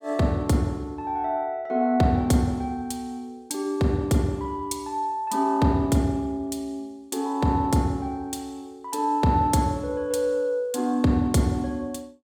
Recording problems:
none

